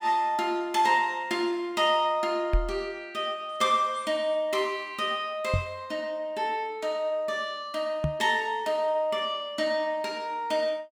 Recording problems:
microphone bump; at 2.5 s, at 5.5 s and at 8 s; peak +5 dB vs average level

